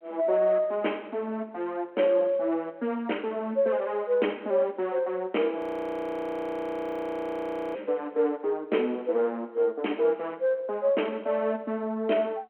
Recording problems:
phone line; 240 Hz to 3.2 kHz, G.726
frozen audio; at 5.5 s for 2 s

